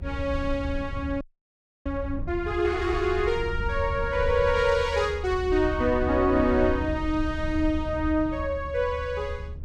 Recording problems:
rumble; below 78 Hz, SNR 8 dB
audio freezing; at 1 s for 0.5 s

